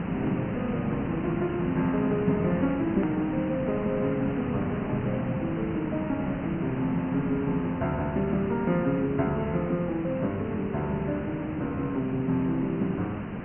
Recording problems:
treble cut off; nothing above 3 kHz
hiss; SNR 4 dB
hard cut with a click; at 3 s

